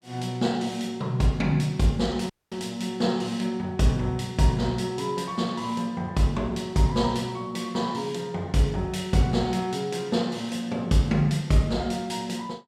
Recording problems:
dropout; at 2.5 s

